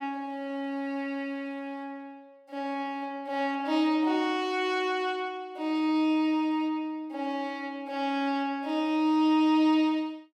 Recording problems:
none

